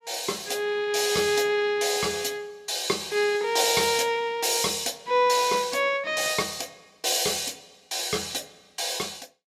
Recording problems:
none

